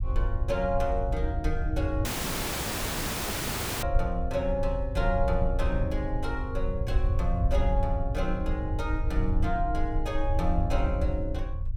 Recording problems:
rumble; below 72 Hz, SNR -1 dB
dropout; at 2 s for 2 s

